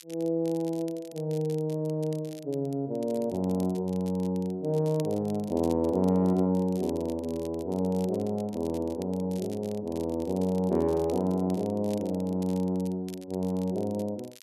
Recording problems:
crackle; vinyl, SNR 23 dB

